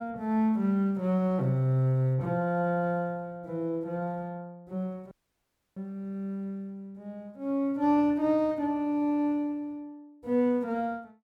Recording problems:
dropout; at 5 s for 0.5 s

